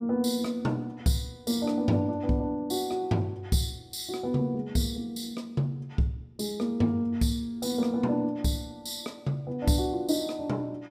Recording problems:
none

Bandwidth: 15.5 kHz